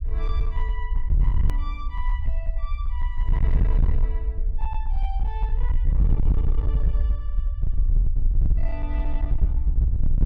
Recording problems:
distortion; hard clipping, signal-to-distortion ratio 7 dB
low-frequency rumble; below 56 Hz, SNR -14 dB
edit click; at 1.5 s

